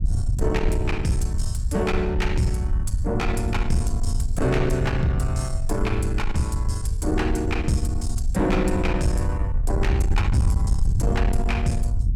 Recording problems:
distortion; soft clipping, signal-to-distortion ratio 10 dB
rumble; below 86 Hz, SNR 1 dB

